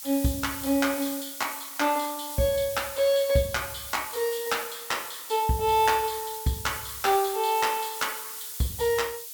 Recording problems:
background hiss; slope +4 dB per octave, SNR 8 dB

